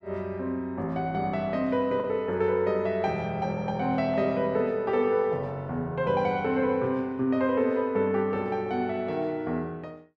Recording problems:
lost packets; 0.4% of the sound replaced, filled with the last packet

